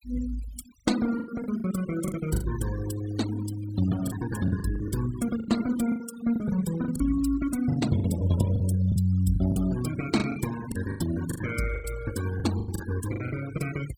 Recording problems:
denoising artefacts; signal-to-artefact ratio 14 dB
packet loss; 12% of the sound replaced, filled with the last packet

